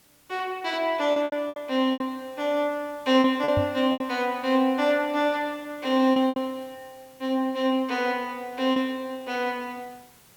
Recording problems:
hiss; slope -2 dB per octave, SNR 28 dB
lost packets; 6% of the sound replaced, filled with repeated pitch periods
microphone bump; at 3.5 s; peak +1 dB vs average level

